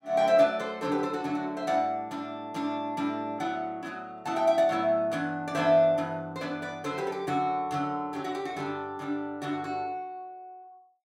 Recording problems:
none

